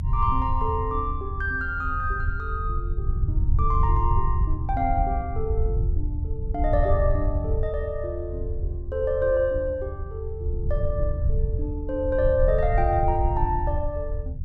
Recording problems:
low-frequency rumble; below 80 Hz, SNR 1 dB

